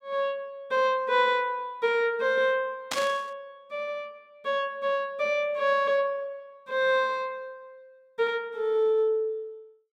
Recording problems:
static burst; at 3 s; peak +1 dB vs average level

